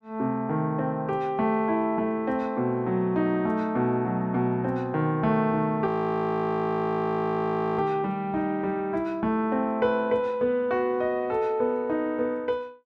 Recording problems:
frozen audio; at 6 s for 2 s

